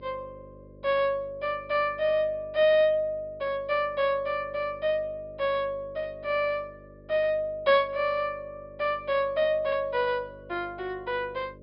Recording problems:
treble missing; nothing above 5.3 kHz
electrical hum; 50 Hz, harmonics up to 600 Hz, SNR 23 dB

